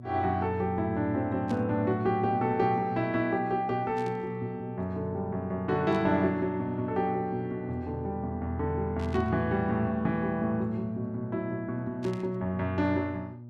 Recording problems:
electrical hum; 60 Hz, harmonics up to 600 Hz, SNR 14 dB
static burst; 5 times, first at 1.5 s; peak -13 dB vs average level

